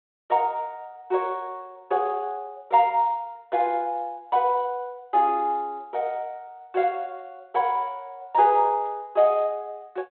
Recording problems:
phone line; 300 Hz to 3.7 kHz, G.726

